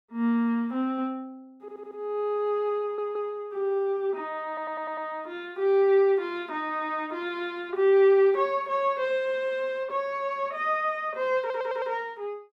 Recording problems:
stutter; 4 times, first at 1.5 s

